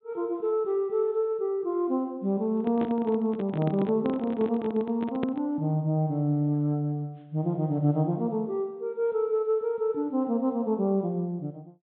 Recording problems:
treble missing; nothing above 4 kHz
microphone handling noise; from 2.5 to 5.5 s; peak 0 dB vs average level

